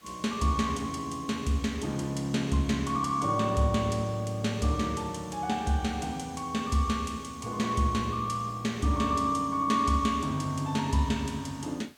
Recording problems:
hiss; slope -1 dB per octave, SNR 28 dB

